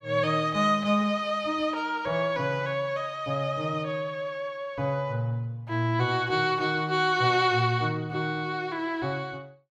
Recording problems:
none

